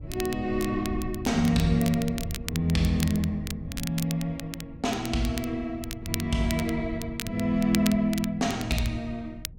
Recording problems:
wind on the microphone; below 120 Hz, SNR 14 dB
crackling; vinyl, SNR 11 dB

